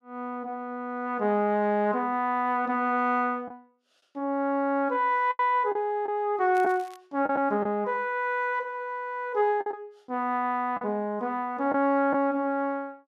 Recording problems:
packet loss; 3% of the sound replaced, filled with the last packet
crackle; at 6.5 s; loose cable, SNR 26 dB

